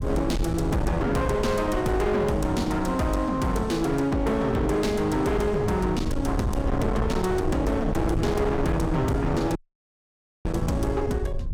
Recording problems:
distorted audio; hard clipping, uneven, signal-to-distortion ratio 6 dB
low-frequency rumble; below 160 Hz, SNR 7 dB
audio cutting out; at 9.5 s for 1 s

